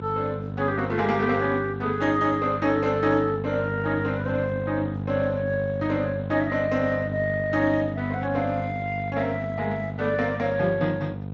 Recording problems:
lossy compression; Speex, log-spectral distance 3 dB
hum; 50 Hz, harmonics up to 750 Hz, SNR 6 dB

